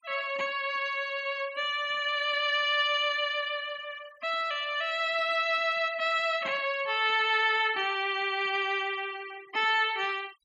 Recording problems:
denoising artefacts; signal-to-artefact ratio 21 dB

